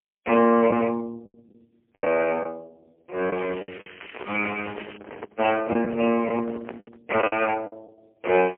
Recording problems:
telephone audio; 280 Hz to 3 kHz, AMR-NB, then MP3
distortion; hard clipping, uneven, signal-to-distortion ratio 13 dB
packet loss; 9% of the sound replaced, filled with the last packet
crackling; from 3.5 to 5 s; loose cable, SNR 17 dB
microphone handling noise; from 4 to 7 s; peak -5 dB vs average level

